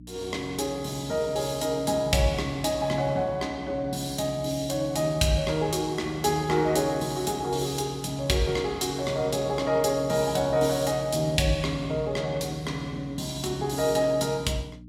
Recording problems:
electrical hum; 60 Hz, harmonics up to 300 Hz, SNR 18 dB

